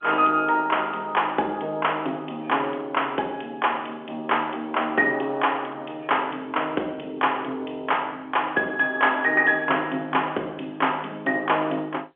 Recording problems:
phone line; 240 Hz to 3.4 kHz, G.711

